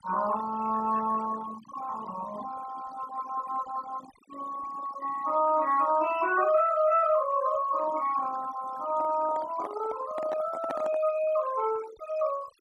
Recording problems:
denoising artefacts; signal-to-artefact ratio 17 dB
handling noise; from 9 to 11 s; peak -3 dB vs average level

